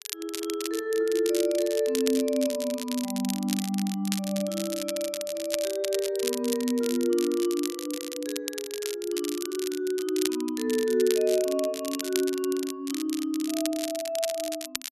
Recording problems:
crackle; vinyl, SNR 8 dB

